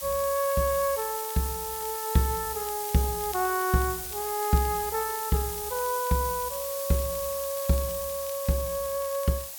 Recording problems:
hiss; SNR 5 dB
crackling; vinyl, SNR 22 dB

